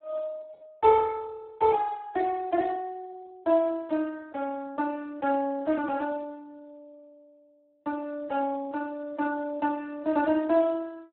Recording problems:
telephone audio; 240 Hz to 2.2 kHz, Speex

